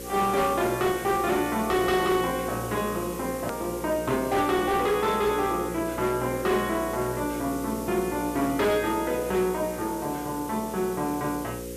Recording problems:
distorted audio; hard clipping, signal-to-distortion ratio 12 dB
hum; 60 Hz, harmonics up to 540 Hz, SNR 11 dB
hiss; slope +1 dB per octave, SNR 14 dB
hard cut with a click; at 3.5 s

